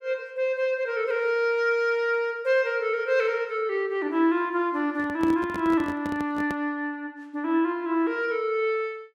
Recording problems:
microphone handling noise; from 5 to 6.5 s; peak -3 dB vs average level

